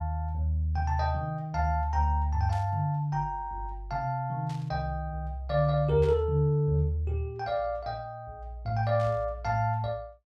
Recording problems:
burst of static; 4 times, first at 2.5 s; peak -14 dB vs average level

